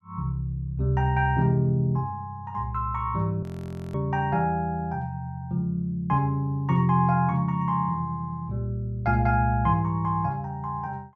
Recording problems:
audio freezing; at 3.5 s for 0.5 s

